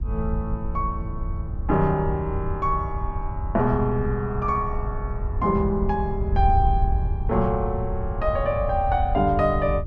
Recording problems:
wind noise; below 84 Hz, SNR 4 dB

